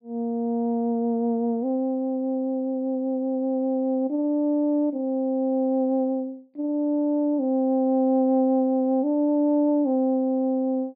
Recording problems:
treble missing; nothing above 4.8 kHz

